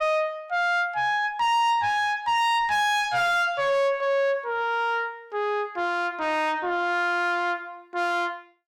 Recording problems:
distorted audio; soft clipping, signal-to-distortion ratio 5 dB

